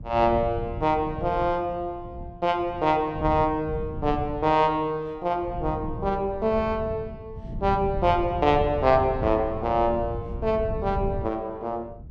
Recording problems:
wind on the microphone; below 140 Hz, SNR 10 dB

